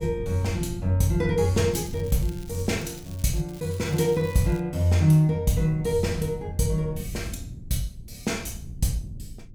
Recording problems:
wind noise; below 140 Hz, SNR 13 dB
crackle; from 1.5 to 3.5 s and from 3.5 to 4.5 s; loose cable, SNR 23 dB

